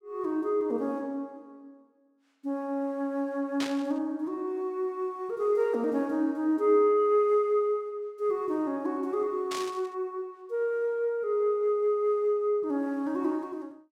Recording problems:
static burst; at 3.5 s and at 9.5 s; peak -3 dB vs average level

